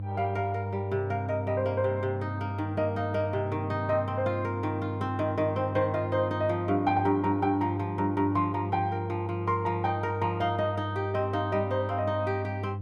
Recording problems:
hum; 50 Hz, harmonics up to 500 Hz, SNR 6 dB

